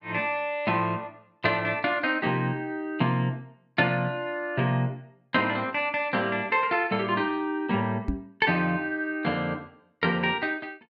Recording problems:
knock on the microphone; at 8 s; peak +2 dB vs average level

